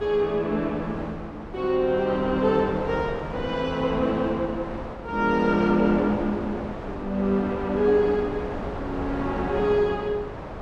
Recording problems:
wind noise; below 860 Hz, SNR 9 dB

